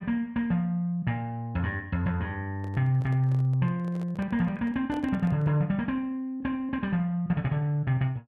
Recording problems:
microphone handling noise; from 2.5 to 5.5 s; peak -10 dB vs average level

